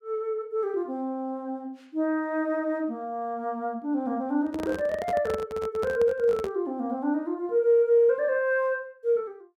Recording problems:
handling noise; from 4.5 to 6.5 s; peak -4 dB vs average level

